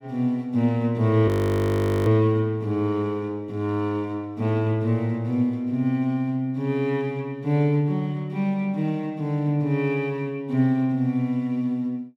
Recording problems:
frozen audio; at 1.5 s for 1 s

